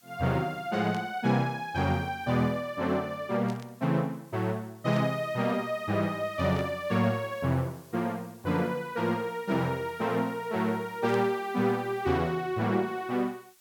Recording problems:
background hiss; slope +2 dB per octave, SNR 27 dB
burst of static; 5 times, first at 1 s; peak -12 dB vs average level

